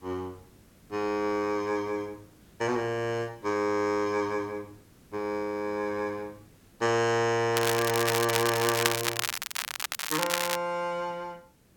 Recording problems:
hiss; SNR 28 dB
crackle; from 7.5 to 11 s; loose cable, SNR 1 dB

